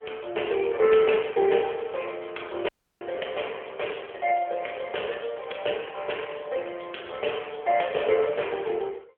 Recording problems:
telephone audio; 320 Hz to 3.3 kHz, AMR-NB
audio cutting out; at 2.5 s

